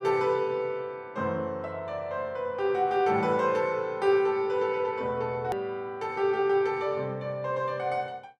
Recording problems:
hard cut with a click; at 5.5 s

